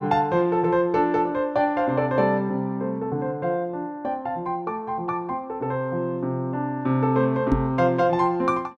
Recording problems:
microphone thump; at 7.5 s; peak +6 dB vs average level

